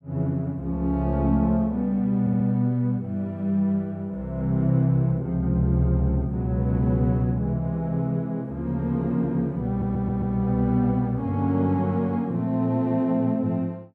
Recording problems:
audio stuttering; at 2 s and at 9.5 s

